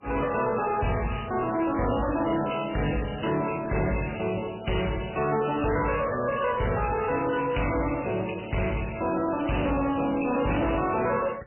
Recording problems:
codec artefacts; MP3, log-spectral distance 11 dB, nothing above 2.9 kHz
distortion; soft clipping, signal-to-distortion ratio 9 dB

